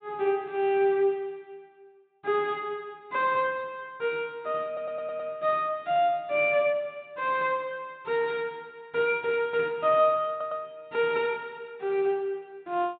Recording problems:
treble cut off; nothing above 4 kHz
stutter; at 4.5 s and at 10 s

